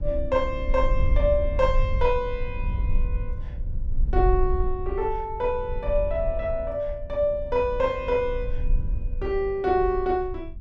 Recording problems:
rumble; below 56 Hz, strongest tone 24 Hz, SNR 5 dB

